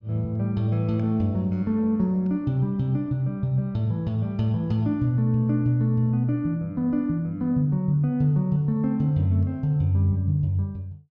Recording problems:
none

